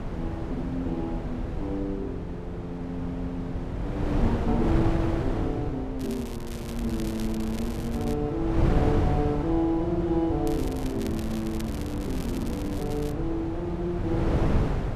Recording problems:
wind noise; below 240 Hz, SNR 0 dB
crackling; from 6 to 8 s and from 10 to 13 s; loose cable, SNR 14 dB

